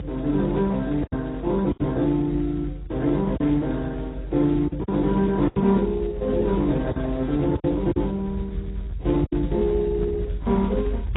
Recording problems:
codec artefacts; Speex, then AAC, log-spectral distance 2 dB, nothing above 3.8 kHz
low-frequency rumble; below 100 Hz, strongest tone 48 Hz, SNR 11 dB
packet loss; 6% of the sound replaced, filled with silence

